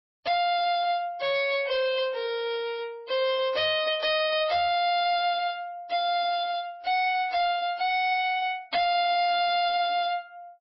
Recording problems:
codec artefacts; MP3, log-spectral distance 3 dB, nothing above 4.5 kHz
distortion; hard clipping, signal-to-distortion ratio 10 dB

